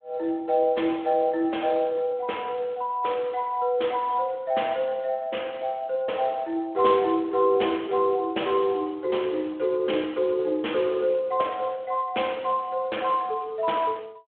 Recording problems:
telephone audio; 260 Hz to 3.6 kHz, Speex

